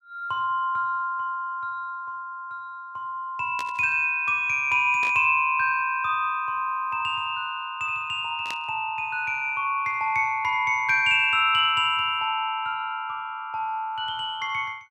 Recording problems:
burst of static; at 3.5 s, at 5 s and at 8.5 s; peak -7 dB vs average level

